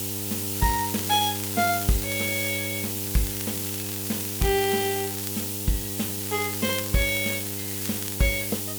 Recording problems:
hum; 50 Hz, harmonics up to 1.3 kHz, SNR 8 dB
background hiss; slope +4 dB per octave, SNR 2 dB
crackle; from 0.5 to 2.5 s, from 3 to 5.5 s and from 6 to 8 s; loose cable, SNR 10 dB

